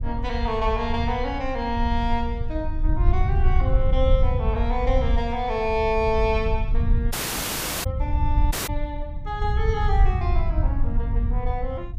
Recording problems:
low-frequency rumble; below 74 Hz, SNR -1 dB
audio cutting out; at 7 s for 0.5 s and at 8.5 s

